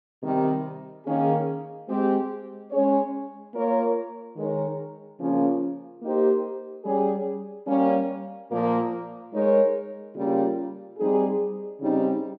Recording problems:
none

